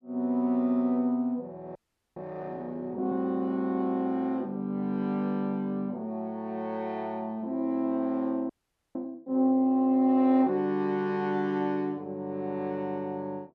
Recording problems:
audio freezing; at 2 s and at 8.5 s

